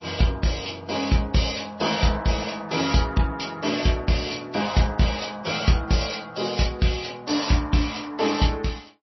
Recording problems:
lossy compression; MP3, then MP3, log-spectral distance 6 dB, nothing above 5.7 kHz

